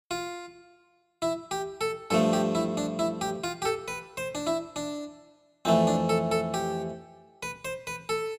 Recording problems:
none

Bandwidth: 15.5 kHz